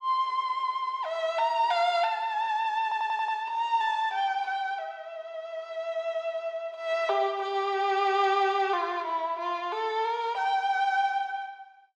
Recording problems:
audio stuttering; at 3 s

